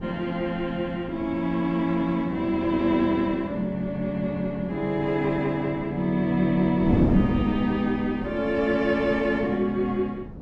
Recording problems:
wind on the microphone; below 300 Hz, SNR 8 dB

